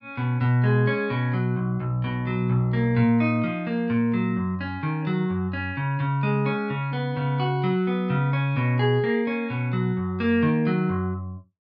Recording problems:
none

